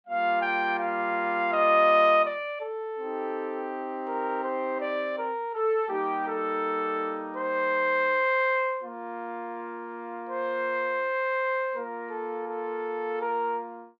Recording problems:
none

